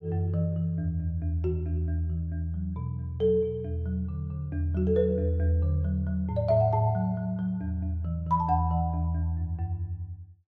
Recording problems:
none

